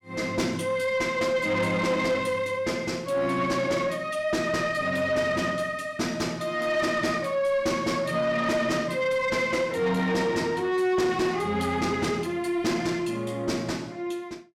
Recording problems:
distortion; soft clipping, signal-to-distortion ratio 12 dB

